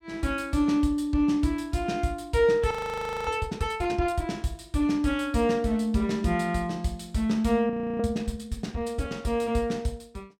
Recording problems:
audio freezing; at 2.5 s for 0.5 s and at 7.5 s

